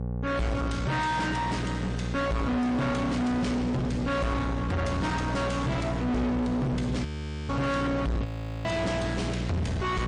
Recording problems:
lossy codec; MP3, log-spectral distance 2 dB, nothing above 19.5 kHz
distorted audio; soft clipping, signal-to-distortion ratio 6 dB
hum; 60 Hz, harmonics up to 1.4 kHz, SNR 3 dB
frozen audio; at 7 s and at 8.5 s

